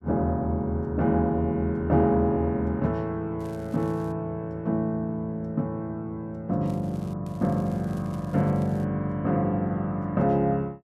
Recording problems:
crackle; at 3.5 s, at 6.5 s and from 7.5 to 9 s; loose cable, SNR 29 dB

